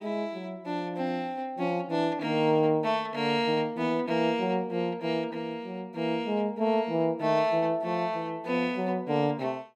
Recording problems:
none

